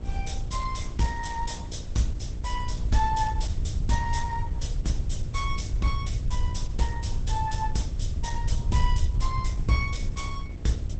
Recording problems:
codec artefacts; Opus, log-spectral distance 3 dB, nothing above 8 kHz
hum; 60 Hz, harmonics up to 780 Hz, SNR 15 dB
hiss; slope -5 dB per octave, SNR 23 dB
rumble; below 84 Hz, SNR 0 dB

